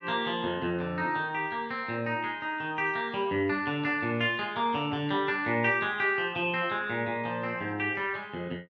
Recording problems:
none

